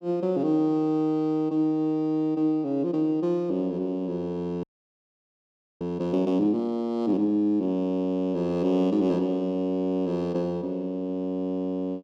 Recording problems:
audio freezing; at 4.5 s for 1 s

